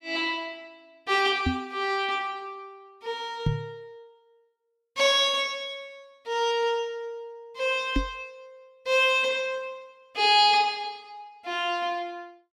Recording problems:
microphone thump; at 1.5 s, at 3.5 s and at 8 s; peak +3 dB vs average level

